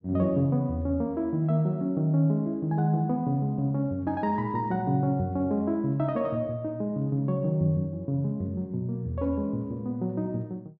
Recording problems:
none

